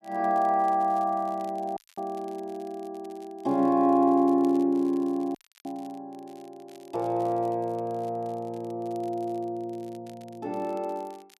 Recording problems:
crackling; vinyl, SNR 30 dB
audio cutting out; at 2 s and at 5.5 s

